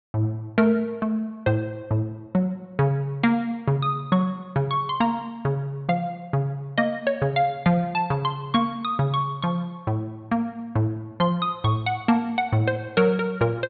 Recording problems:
treble missing; nothing above 4.5 kHz

